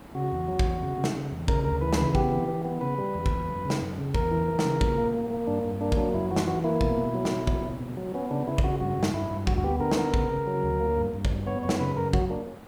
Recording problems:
hiss; slope -8 dB per octave, SNR 18 dB

